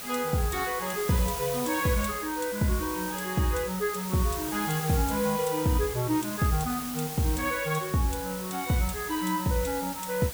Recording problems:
background hiss; slope -1 dB per octave, SNR 7 dB

